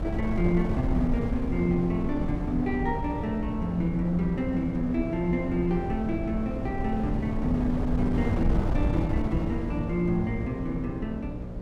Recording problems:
hum; 60 Hz, harmonics up to 600 Hz, SNR 10 dB
wind on the microphone; below 160 Hz, SNR 4 dB

